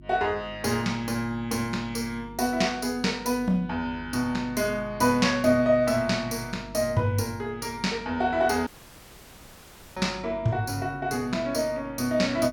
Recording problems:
hum; 50 Hz, harmonics up to 350 Hz, SNR 20 dB
dropout; at 8.5 s for 1.5 s

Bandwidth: 17.5 kHz